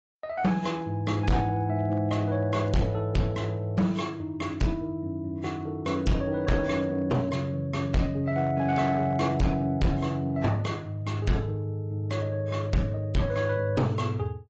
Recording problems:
lossy compression; AAC, log-spectral distance 2 dB
distortion; hard clipping, signal-to-distortion ratio 8 dB

